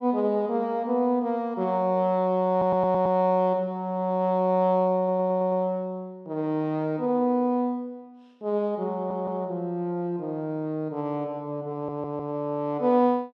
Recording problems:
stutter; 4 times, first at 2.5 s

